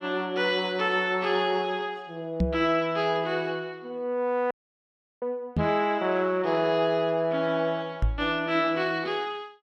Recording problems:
knock on the microphone; at 2.5 s, at 5.5 s and at 8 s; peak +5 dB vs average level
dropout; at 4.5 s for 0.5 s

